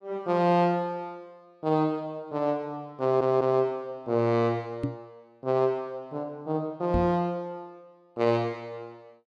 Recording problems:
stutter; at 3 s
knock on the microphone; at 5 s and at 7 s; peak +2 dB vs average level

